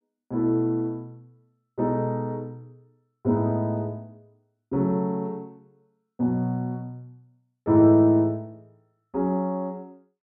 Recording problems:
none

